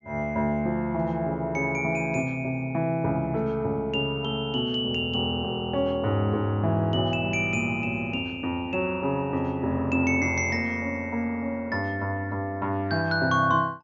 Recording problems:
none

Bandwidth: 7 kHz